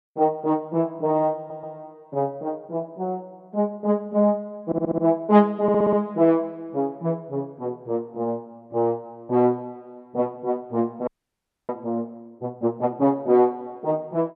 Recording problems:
audio stuttering; at 1.5 s, at 4.5 s and at 5.5 s
audio freezing; at 11 s for 0.5 s

